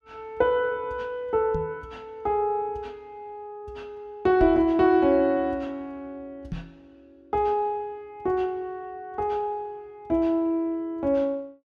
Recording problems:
microphone bump; at 1.5 s, at 4.5 s and at 6.5 s; peak -4 dB vs average level

